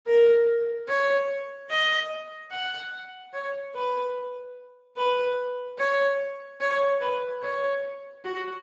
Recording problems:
lossy compression; Speex, log-spectral distance 3 dB

